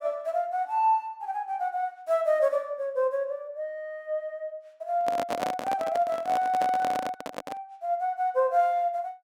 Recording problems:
microphone handling noise; from 5 to 7.5 s; peak +2 dB vs average level

